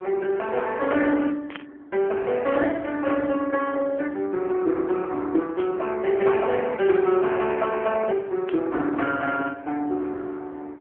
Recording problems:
phone line; 260 Hz to 3.4 kHz, AMR-NB
static burst; at 1.5 s, at 5.5 s and at 8.5 s; peak -7 dB vs average level

